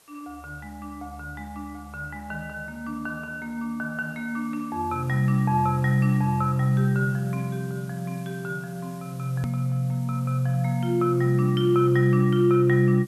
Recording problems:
hiss; slope -1 dB per octave, SNR 27 dB
click at an edit; at 9.5 s

